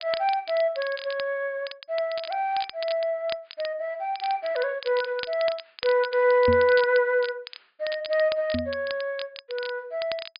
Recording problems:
treble cut off; nothing above 5 kHz
crackle; vinyl, SNR 14 dB
knock on the microphone; at 6.5 s and at 8.5 s; peak +1 dB vs average level

